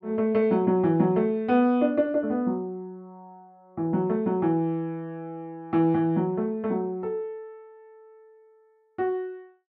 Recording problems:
none

